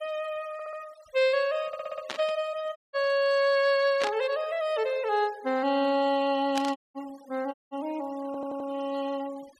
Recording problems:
denoising artefacts; signal-to-artefact ratio 22 dB
audio stuttering; at 0.5 s, at 1.5 s and at 8.5 s
burst of static; at 2 s, at 4 s and at 6.5 s; peak 0 dB vs average level
dropout; at 3 s, at 7 s and at 7.5 s

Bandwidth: 15 kHz